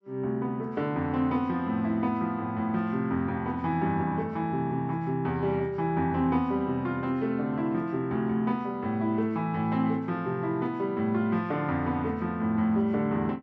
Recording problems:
none

